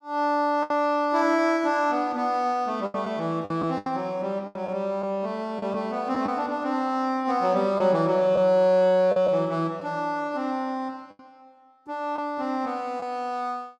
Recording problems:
packet loss; 5% of the sound replaced, filled with the last packet

